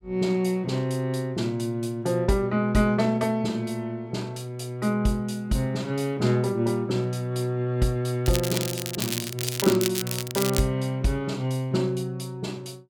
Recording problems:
crackle; from 8.5 to 11 s; loose cable, SNR 4 dB

